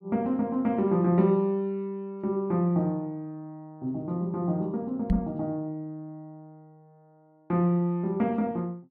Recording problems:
microphone thump; at 5 s; peak +6 dB vs average level

